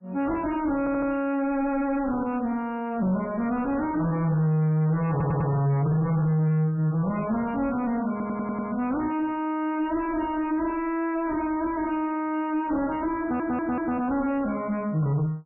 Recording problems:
lossy codec; MP3, log-spectral distance 2 dB, nothing above 2.3 kHz
distortion; soft clipping, signal-to-distortion ratio 7 dB
audio stuttering; 4 times, first at 1 s

